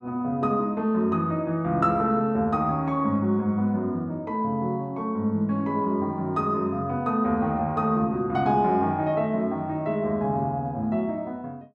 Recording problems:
none

